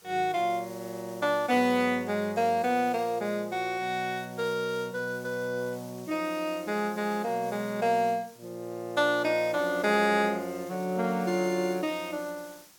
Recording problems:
background hiss; slope -1 dB per octave, SNR 22 dB

